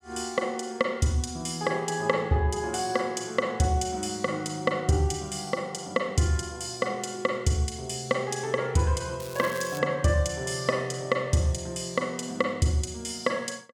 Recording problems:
crackle; at 9 s; loose cable, SNR 15 dB

